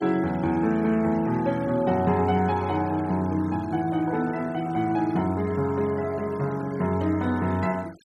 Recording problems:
noise reduction artefacts; signal-to-artefact ratio 23 dB

